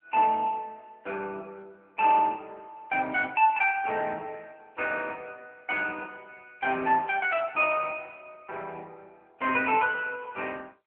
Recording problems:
phone line; 280 Hz to 3.3 kHz, AMR-NB

